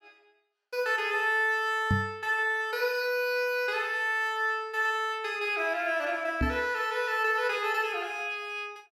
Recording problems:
knock on the microphone; at 2 s and at 6.5 s; peak +4 dB vs average level

